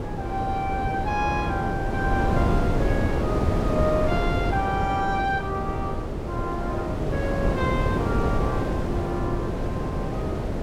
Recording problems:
wind noise; below 430 Hz, SNR -2 dB

